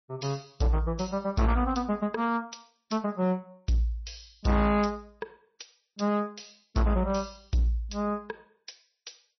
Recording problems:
codec artefacts; MP3, log-spectral distance 6 dB, nothing above 5.8 kHz
distorted audio; hard clipping, uneven, signal-to-distortion ratio 11 dB

